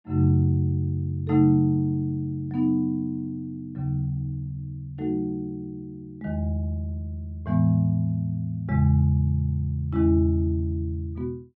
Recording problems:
none

